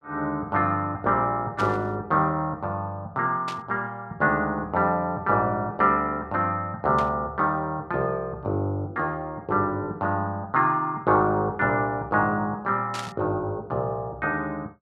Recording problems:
burst of static; 4 times, first at 1.5 s; peak -6 dB vs average level

